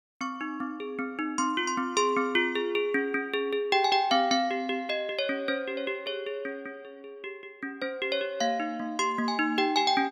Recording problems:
none

